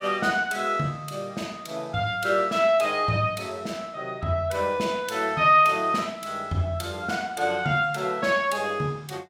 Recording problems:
none

